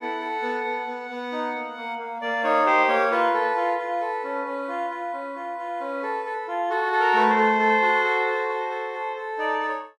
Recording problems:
none

